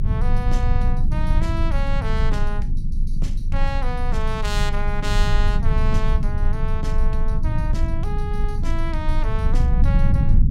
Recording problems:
low-frequency rumble; below 62 Hz, strongest tone 22 Hz, SNR -7 dB

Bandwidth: 17 kHz